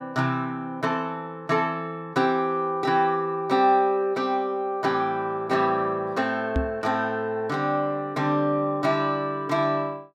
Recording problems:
microphone thump; at 6.5 s; peak +2 dB vs average level

